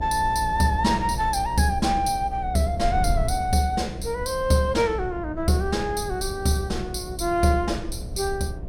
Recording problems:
hum; 60 Hz, harmonics up to 720 Hz, SNR 13 dB
wind on the microphone; below 94 Hz, SNR 11 dB

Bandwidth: 16.5 kHz